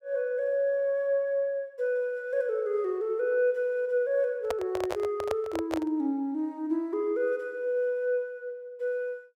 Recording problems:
microphone handling noise; from 4.5 to 6 s; peak 0 dB vs average level

